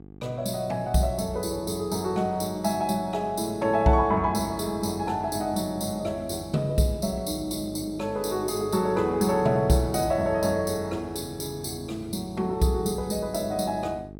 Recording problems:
electrical hum; 50 Hz, harmonics up to 850 Hz, SNR 17 dB

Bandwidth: 17 kHz